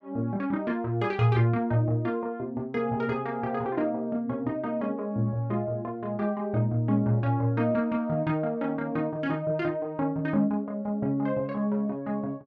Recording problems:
none

